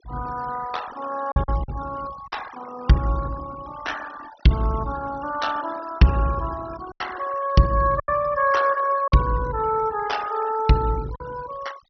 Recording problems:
treble cut off; nothing above 6 kHz
noise reduction artefacts; signal-to-artefact ratio 16 dB
packet loss; 3% of the sound replaced, filled with silence

